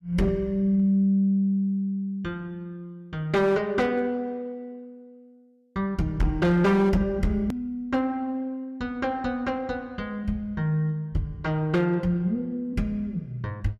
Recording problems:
distorted audio; hard clipping, signal-to-distortion ratio 11 dB
edit click; at 7.5 s

